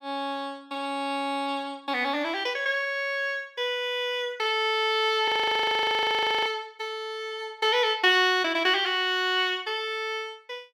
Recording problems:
frozen audio; at 5.5 s for 1 s

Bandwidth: 17 kHz